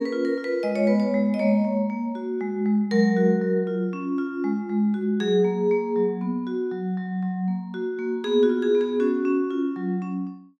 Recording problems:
none

